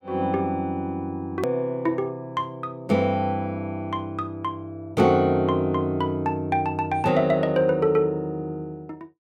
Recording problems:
click at an edit; at 1.5 s

